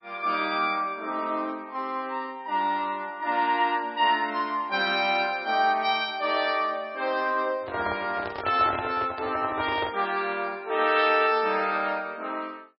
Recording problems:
lossy codec; MP3, log-spectral distance 3 dB, nothing above 5.5 kHz
handling noise; from 7.5 to 10 s; peak -2 dB vs average level

